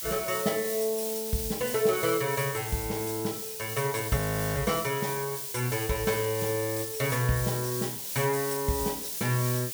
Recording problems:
background hiss; SNR 4 dB
audio freezing; at 4 s

